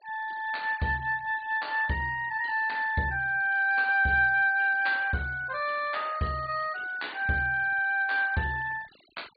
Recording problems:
treble cut off; nothing above 4.6 kHz
denoising artefacts; signal-to-artefact ratio 24 dB

